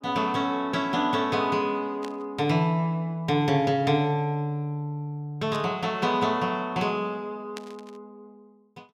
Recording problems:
static burst; at 2 s, at 5.5 s and at 7.5 s; peak -8 dB vs average level

